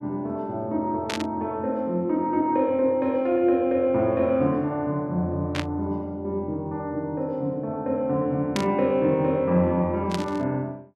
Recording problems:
static burst; 4 times, first at 1 s; peak -1 dB vs average level

